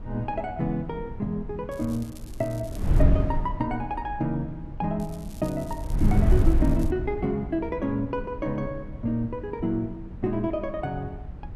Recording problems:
wind noise; below 96 Hz, SNR 1 dB
crackling; from 1.5 to 3 s and from 5 to 7 s; loose cable, SNR 20 dB

